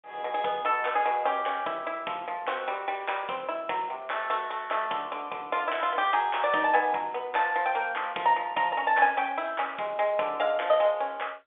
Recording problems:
telephone audio; 320 Hz to 3.6 kHz, G.711

